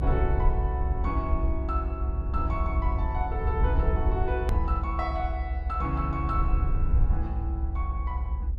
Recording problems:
low-frequency rumble; below 68 Hz, SNR -4 dB
edit click; at 4.5 s

